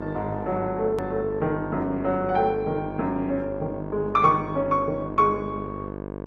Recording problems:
lossy codec; MP2, then Opus, log-spectral distance 2 dB
electrical hum; 50 Hz, harmonics up to 1.7 kHz, SNR 9 dB
hard cut with a click; at 1 s

